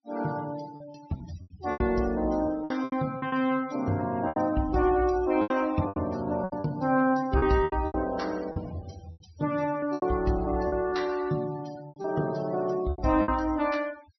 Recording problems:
treble missing; nothing above 5.8 kHz
denoising artefacts; signal-to-artefact ratio 20 dB
packet loss; 11% of the sound replaced, filled with repeated pitch periods

